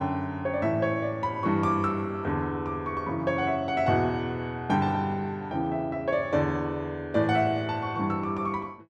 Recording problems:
none

